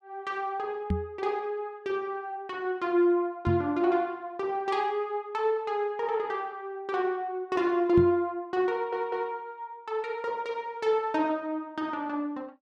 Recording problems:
knock on the microphone; at 1 s, at 3.5 s and at 8 s; peak +4 dB vs average level
stutter; at 8.5 s

